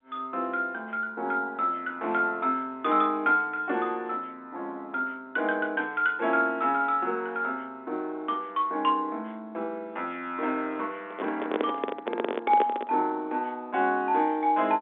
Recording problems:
phone line; 220 Hz to 3.6 kHz, G.711
handling noise; from 11 to 13 s; peak +4 dB vs average level

